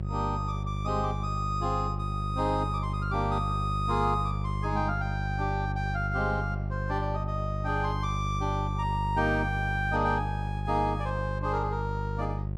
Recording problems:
mains hum; 50 Hz, harmonics up to 550 Hz, SNR 1 dB

